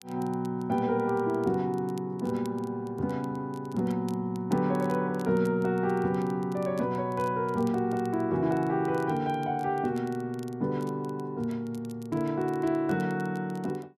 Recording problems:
crackling; vinyl, SNR 27 dB

